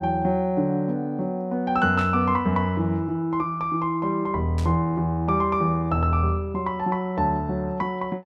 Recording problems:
static burst; at 2 s and at 4.5 s; peak -10 dB vs average level

